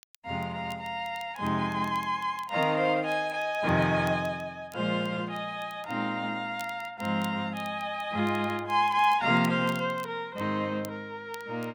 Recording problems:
crackle; vinyl, SNR 24 dB

